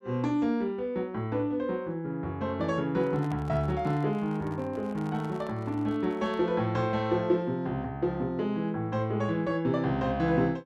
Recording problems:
handling noise; from 3 to 6.5 s; peak -10 dB vs average level

